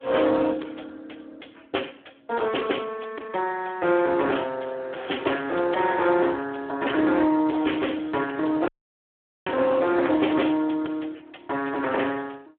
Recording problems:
telephone audio; 260 Hz to 3.5 kHz, Speex
distorted audio; hard clipping, signal-to-distortion ratio 13 dB
audio cutting out; at 8.5 s for 1 s

